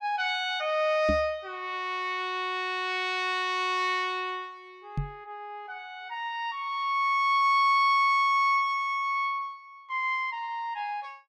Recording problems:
microphone bump; at 1 s and at 5 s; peak 0 dB vs average level

